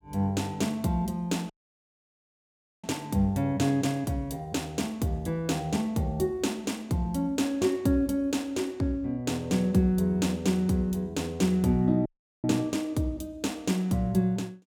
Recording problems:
dropout; at 1.5 s for 1.5 s and at 12 s

